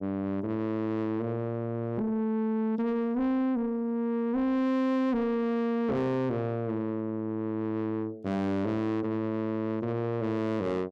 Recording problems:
distorted audio; soft clipping, signal-to-distortion ratio 7 dB

